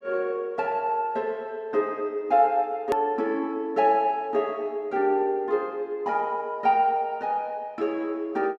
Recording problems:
hard cut with a click; at 3 s

